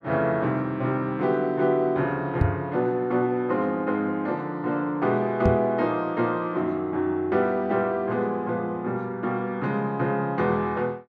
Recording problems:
knock on the microphone; at 2.5 s and at 5.5 s; peak +6 dB vs average level

